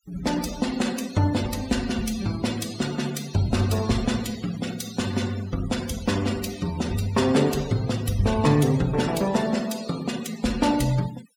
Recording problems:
noise reduction artefacts; signal-to-artefact ratio 14 dB

